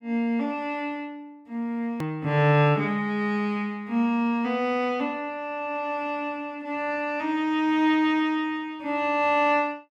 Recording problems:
edit click; at 2 s

